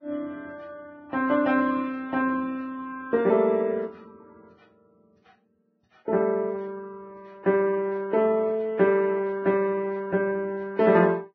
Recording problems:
lossy compression; Vorbis, log-spectral distance 2 dB, nothing above 5.2 kHz

